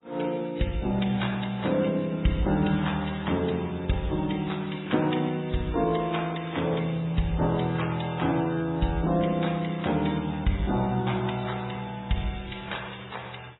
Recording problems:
lossy codec; MP3, then AAC, log-spectral distance 6 dB, nothing above 3.8 kHz

